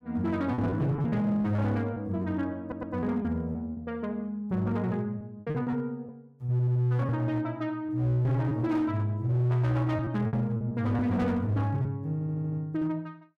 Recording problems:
distorted audio; hard clipping, signal-to-distortion ratio 12 dB
packet loss; 7% of the sound replaced, filled with repeated pitch periods
audio stuttering; at 2.5 s, at 6.5 s and at 12 s

